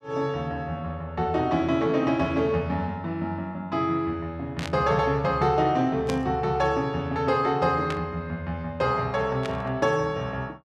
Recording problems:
burst of static; 4 times, first at 4.5 s; peak -4 dB vs average level

